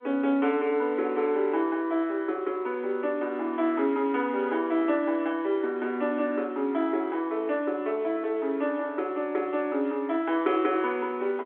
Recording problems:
telephone audio; 240 Hz to 3.6 kHz, G.711

